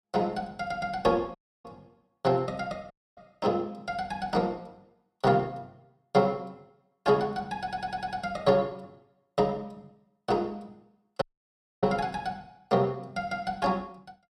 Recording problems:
dropout; at 1.5 s, at 3 s and at 11 s for 0.5 s
audio stuttering; at 7.5 s

